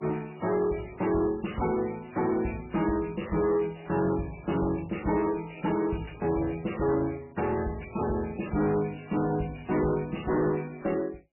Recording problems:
lossy compression; MP3, log-spectral distance 8 dB, nothing above 2.8 kHz
distorted audio; soft clipping, signal-to-distortion ratio 11 dB

